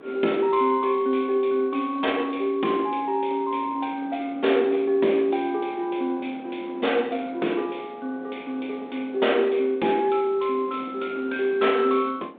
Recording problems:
phone line; 220 Hz to 3.6 kHz, G.726
wind on the microphone; below 630 Hz, SNR 21 dB

